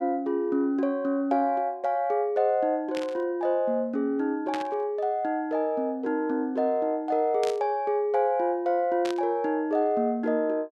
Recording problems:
static burst; 4 times, first at 3 s; peak -5 dB vs average level

